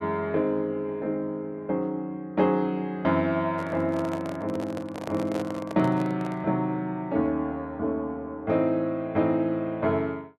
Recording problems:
handling noise; from 3.5 to 6.5 s; peak -4 dB vs average level

